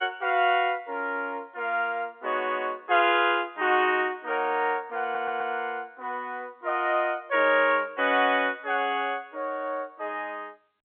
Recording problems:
telephone audio; 240 Hz to 3.4 kHz, G.711
audio stuttering; at 5 s

